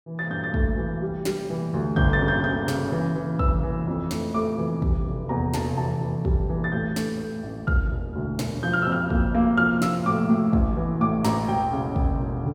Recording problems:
none

